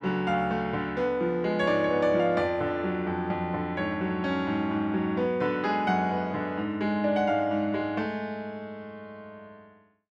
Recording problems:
none

